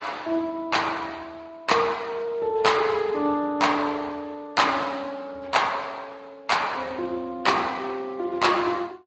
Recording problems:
lossy codec; Speex, then MP3, log-spectral distance 4 dB, nothing above 7.8 kHz

